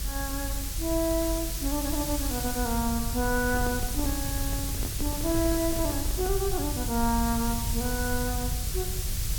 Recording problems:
background hiss; SNR 2 dB
low-frequency rumble; below 84 Hz, SNR 3 dB
microphone handling noise; from 3.5 to 6.5 s; peak -5 dB vs average level

